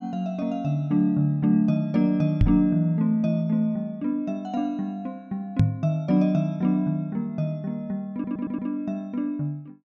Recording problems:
microphone thump; at 2.5 s and at 5.5 s; peak +8 dB vs average level
stutter; at 8 s

